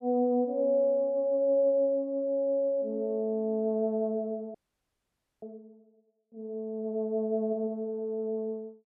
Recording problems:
frozen audio; at 4.5 s for 1 s

